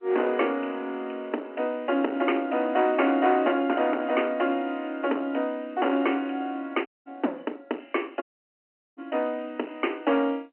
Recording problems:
phone line; 220 Hz to 3.1 kHz, G.711
distortion; hard clipping, uneven, signal-to-distortion ratio 10 dB
audio cutting out; at 7 s and at 8 s for 1 s

